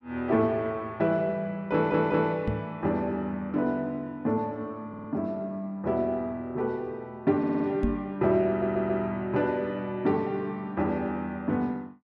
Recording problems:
audio stuttering; 4 times, first at 1.5 s
microphone bump; at 2.5 s and at 8 s; peak +4 dB vs average level

